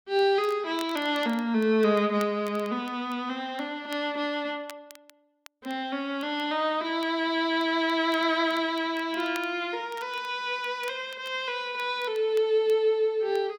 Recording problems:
crackle; vinyl, SNR 23 dB

